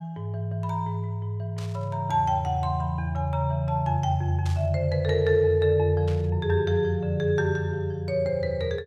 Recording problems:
static burst; at 1.5 s, at 4.5 s and at 6 s; peak -11 dB vs average level

